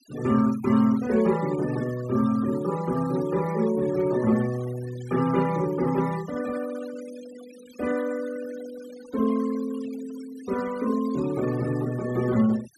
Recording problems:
denoising artefacts; signal-to-artefact ratio 17 dB

